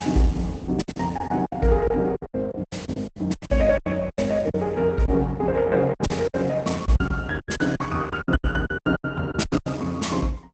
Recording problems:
lossy codec; Opus, log-spectral distance 3 dB, nothing above 8 kHz
packet loss; 18% of the sound replaced, filled with silence

